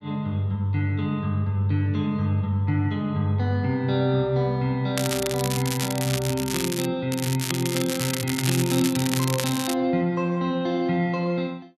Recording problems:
crackle; from 5 to 7 s and from 7 to 9.5 s; loose cable, SNR 5 dB

